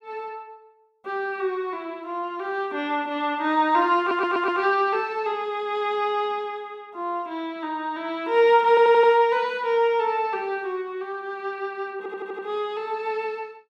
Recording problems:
audio stuttering; at 4 s, at 8.5 s and at 12 s

